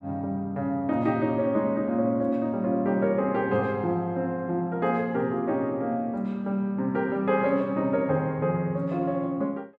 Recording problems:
none

